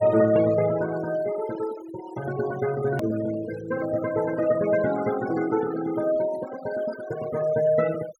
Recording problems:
denoising artefacts; signal-to-artefact ratio 13 dB
edit click; at 3 s

